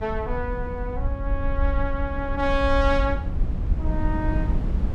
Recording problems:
rumble; below 62 Hz, SNR 1 dB
wind on the microphone; below 180 Hz, SNR 6 dB

